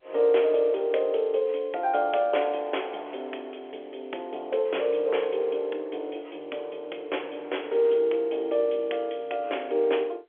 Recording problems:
phone line; 320 Hz to 3.4 kHz, G.711

